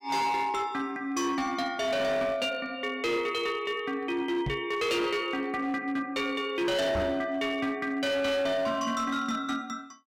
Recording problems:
distortion; hard clipping, signal-to-distortion ratio 10 dB
knock on the microphone; at 4.5 s and at 7 s; peak +1 dB vs average level

